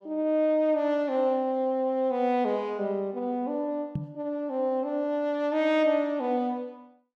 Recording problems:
knock on the microphone; at 4 s; peak 0 dB vs average level

